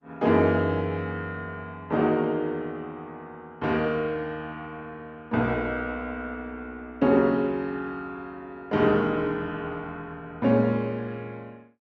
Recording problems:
lossy codec; Opus, log-spectral distance 2 dB

